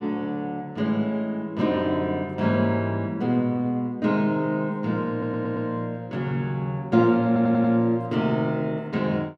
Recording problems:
audio stuttering; at 5 s and at 7.5 s

